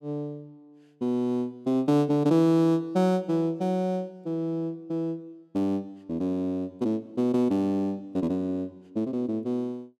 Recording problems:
none

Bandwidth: 13.5 kHz